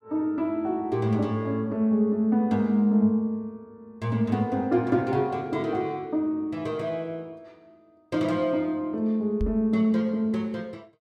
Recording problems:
microphone bump; at 9.5 s; peak -1 dB vs average level

